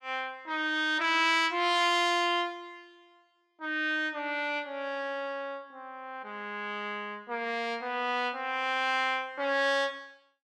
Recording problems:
none

